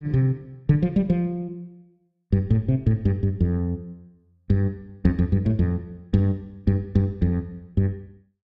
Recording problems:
none

